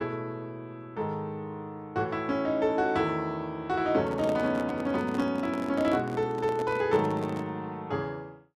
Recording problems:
microphone handling noise; from 4 to 7.5 s; peak -2 dB vs average level

